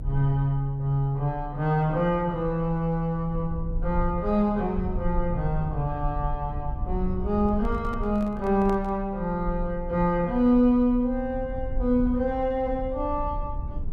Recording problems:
low-frequency rumble; below 64 Hz, strongest tone 32 Hz, SNR 10 dB
microphone handling noise; from 7.5 to 9 s; peak -9 dB vs average level

